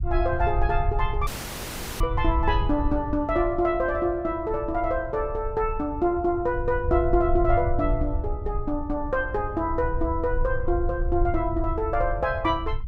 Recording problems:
low-frequency rumble; below 74 Hz, SNR 5 dB
audio cutting out; at 1.5 s for 0.5 s

